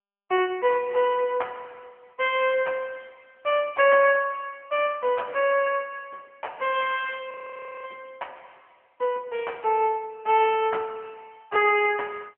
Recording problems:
telephone audio; 280 Hz to 3.2 kHz, AMR-NB
audio freezing; at 7.5 s for 0.5 s

